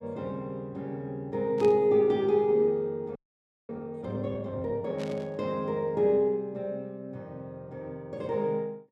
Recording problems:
burst of static; at 1.5 s and at 5 s; peak -11 dB vs average level
frozen audio; at 3 s for 0.5 s

